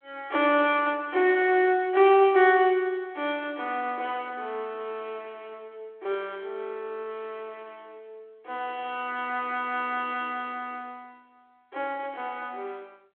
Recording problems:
telephone audio; 320 Hz to 3.4 kHz, G.726

